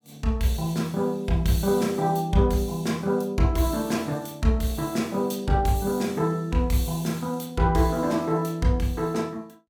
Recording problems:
none

